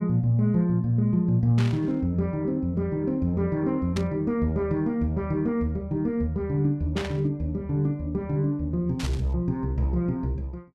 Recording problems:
static burst; 4 times, first at 1.5 s; peak -4 dB vs average level

